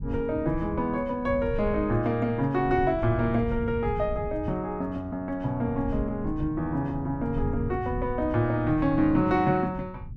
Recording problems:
rumble; below 120 Hz, SNR 11 dB

